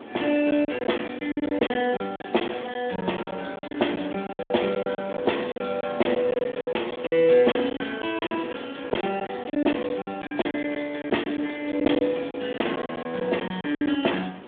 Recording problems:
phone line; 220 Hz to 3.5 kHz, Speex
background hiss; SNR 26 dB
wind noise; below 770 Hz, SNR 19 dB
lost packets; 15% of the sound replaced, filled with silence

